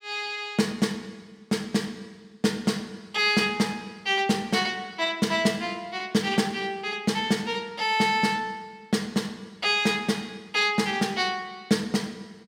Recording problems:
none

